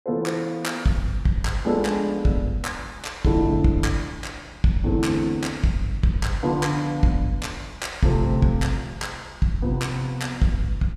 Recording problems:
none

